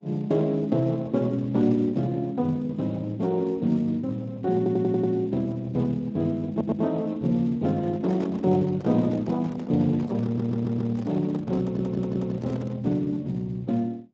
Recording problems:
lossy compression; Opus, then Speex, log-spectral distance 2 dB
audio stuttering; 4 times, first at 4.5 s
handling noise; from 7.5 to 13 s; peak -8 dB vs average level

